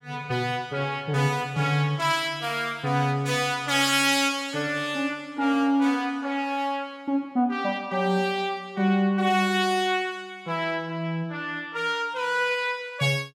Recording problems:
none

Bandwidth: 17 kHz